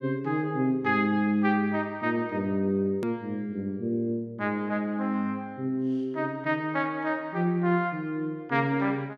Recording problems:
hard cut with a click; at 3 s

